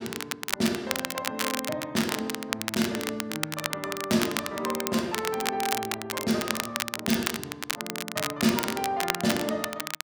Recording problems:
crackling; vinyl, SNR 2 dB

